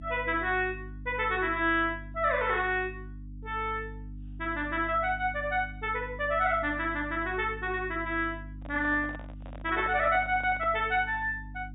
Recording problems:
treble missing; nothing above 4 kHz
mains hum; 50 Hz, harmonics up to 300 Hz, SNR 14 dB
microphone handling noise; from 8.5 to 11 s; peak -11 dB vs average level

